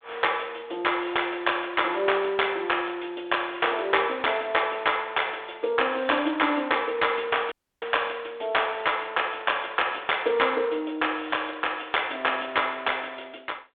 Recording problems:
telephone audio; 280 Hz to 3.6 kHz, G.726
audio cutting out; at 7.5 s

